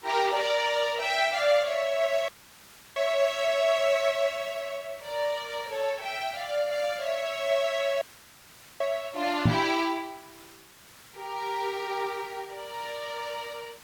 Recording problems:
codec artefacts; Opus, log-spectral distance 3 dB, nothing above 18.9 kHz
background hiss; slope -1 dB per octave, SNR 21 dB
audio cutting out; at 2.5 s for 0.5 s and at 8 s for 1 s
microphone bump; at 9.5 s; peak +8 dB vs average level

